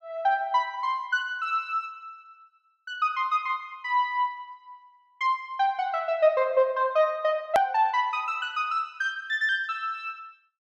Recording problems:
edit click; at 7.5 s

